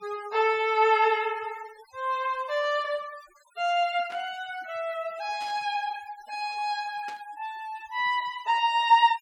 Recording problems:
denoising artefacts; signal-to-artefact ratio 23 dB
static burst; at 4 s, at 5.5 s and at 7 s; peak -13 dB vs average level

